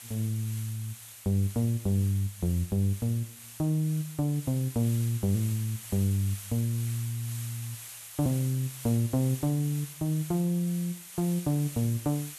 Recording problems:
background hiss; SNR 13 dB

